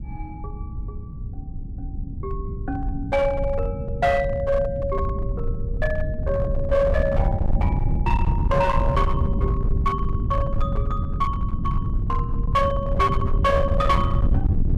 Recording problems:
distortion; hard clipping, uneven, signal-to-distortion ratio 10 dB
low-frequency rumble; below 110 Hz, SNR 1 dB

